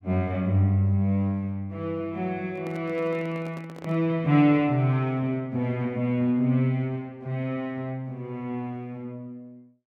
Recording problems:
handling noise; from 2.5 to 4 s; peak -10 dB vs average level

